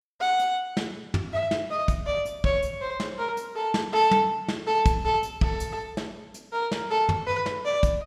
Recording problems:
none

